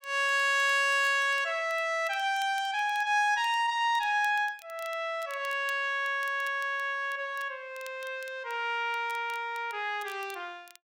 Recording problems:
crackle; vinyl, SNR 25 dB

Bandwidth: 16 kHz